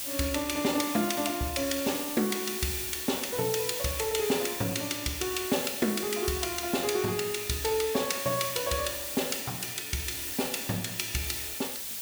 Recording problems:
background hiss; SNR 4 dB

